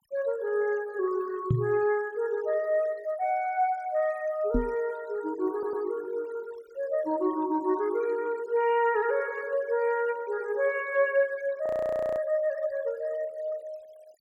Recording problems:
noise reduction artefacts; signal-to-artefact ratio 22 dB
knock on the microphone; at 1.5 s and at 4.5 s; peak +7 dB vs average level
stutter; at 5.5 s
frozen audio; at 12 s for 0.5 s

